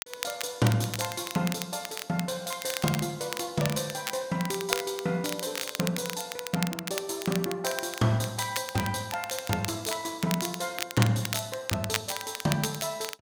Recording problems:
crackling; vinyl, SNR 6 dB

